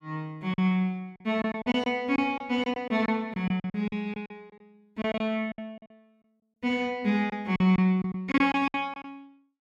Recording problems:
lost packets; 12% of the sound replaced, filled with silence

